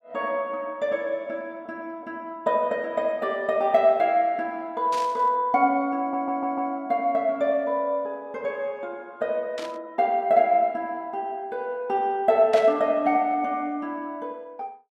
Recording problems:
static burst; at 5 s, at 9.5 s and at 13 s; peak -6 dB vs average level
stutter; at 6 s

